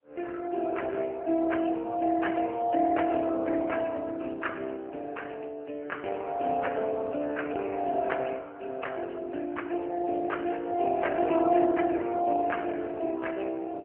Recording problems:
phone line; 170 Hz to 3 kHz, AMR-NB

